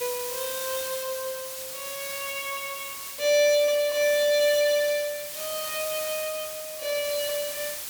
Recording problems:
background hiss; slope +1 dB per octave, SNR 7 dB

